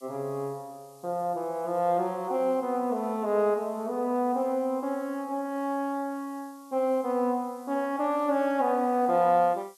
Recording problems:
background hiss; slope +8 dB per octave, SNR 28 dB

